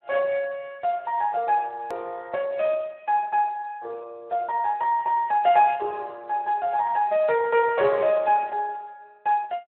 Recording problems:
phone line; 370 Hz to 3.3 kHz, Speex
click at an edit; at 2 s

